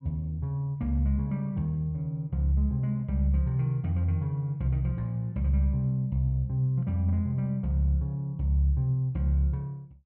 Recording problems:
none

